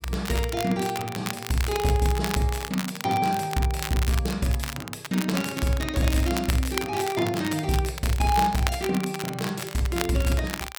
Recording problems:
crackling; vinyl, SNR 8 dB

